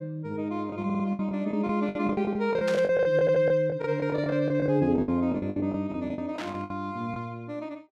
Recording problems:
lost packets; 15% of the sound replaced, filled with the last packet
stutter; at 1 s and at 3 s
burst of static; at 2.5 s and at 6.5 s; peak -5 dB vs average level

